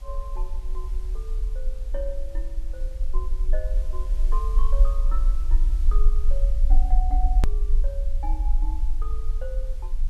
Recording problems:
background hiss; slope -2 dB per octave, SNR 13 dB
rumble; below 40 Hz, strongest tone 24 Hz, SNR -14 dB
hard cut with a click; at 7.5 s

